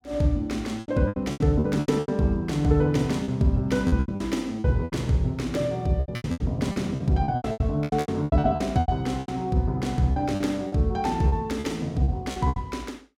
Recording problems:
packet loss; 16% of the sound replaced, filled with repeated pitch periods

